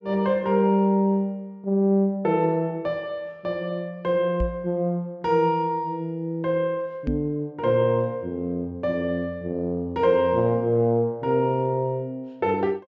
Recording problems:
low-pass filter; nothing above 8 kHz
knock on the microphone; at 4.5 s and at 7 s; peak +1 dB vs average level

